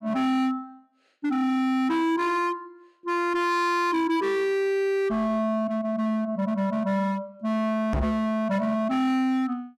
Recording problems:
distortion; hard clipping, signal-to-distortion ratio 7 dB
microphone thump; at 8 s; peak +3 dB vs average level

